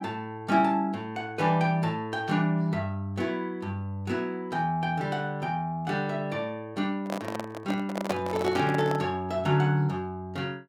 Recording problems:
microphone handling noise; from 7 to 9 s; peak +3 dB vs average level

